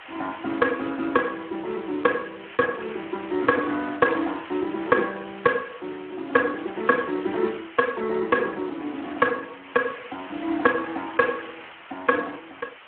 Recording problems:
telephone audio; 220 Hz to 2.3 kHz, Speex
background hiss; SNR 17 dB

